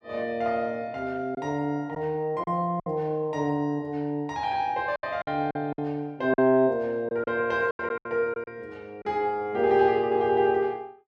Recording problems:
lost packets; 6% of the sound replaced, filled with silence

